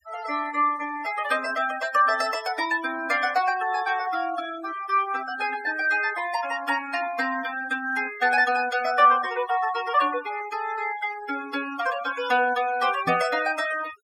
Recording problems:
noise reduction artefacts; signal-to-artefact ratio 15 dB
microphone thump; at 13 s; peak -3 dB vs average level

